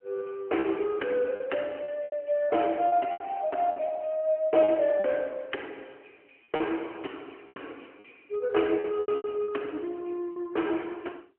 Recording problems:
phone line; 240 Hz to 3.1 kHz, AMR-NB
lost packets; 8% of the sound replaced, filled with repeated pitch periods

